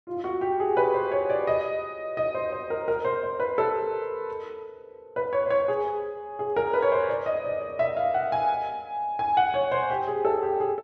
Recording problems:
none

